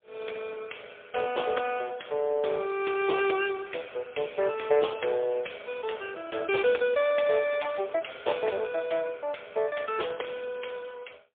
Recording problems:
phone line; 340 Hz to 3.4 kHz, AMR-NB, then MP3

